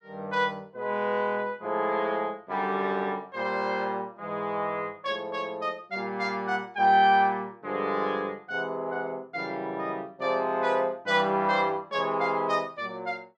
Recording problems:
none

